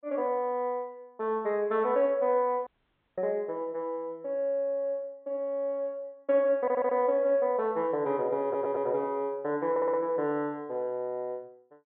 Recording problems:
treble cut off; nothing above 4 kHz
dropout; at 2.5 s for 0.5 s
audio stuttering; at 6.5 s, at 8.5 s and at 9.5 s

